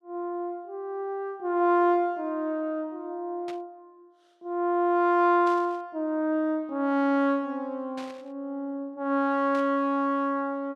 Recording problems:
static burst; 4 times, first at 3.5 s; peak -13 dB vs average level

